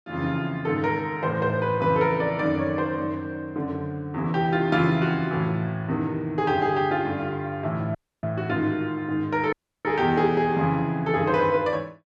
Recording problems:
dropout; at 8 s and at 9.5 s

